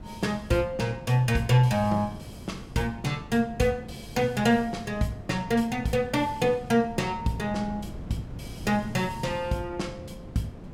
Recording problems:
wind noise; below 260 Hz, SNR 15 dB

